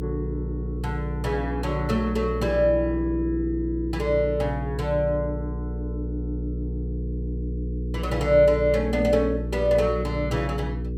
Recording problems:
hum; 60 Hz, harmonics up to 480 Hz, SNR 6 dB

